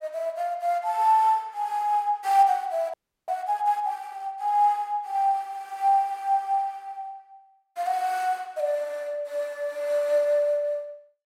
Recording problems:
audio freezing; at 3 s

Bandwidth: 16 kHz